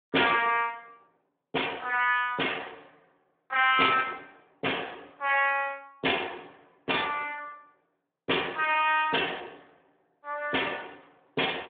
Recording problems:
phone line; 300 Hz to 3.5 kHz, Speex

